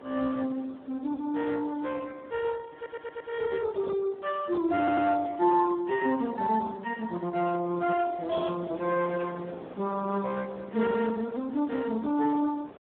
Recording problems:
telephone audio; 190 Hz to 2.8 kHz, Speex
wind noise; below 770 Hz, SNR 19 dB
stutter; at 3 s and at 5 s

